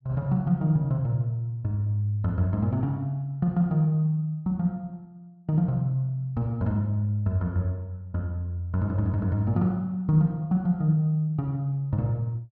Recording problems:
none

